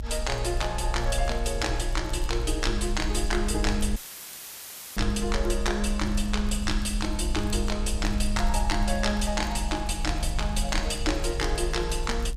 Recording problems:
rumble; below 54 Hz, strongest tone 32 Hz, SNR 4 dB
crackling; vinyl, SNR 25 dB
audio cutting out; at 4 s for 1 s; filled with static

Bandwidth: 14.5 kHz